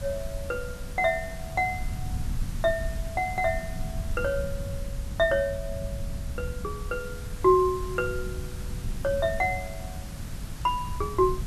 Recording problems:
hiss; slope -2 dB per octave, SNR 17 dB
low-frequency rumble; below 110 Hz, SNR 8 dB

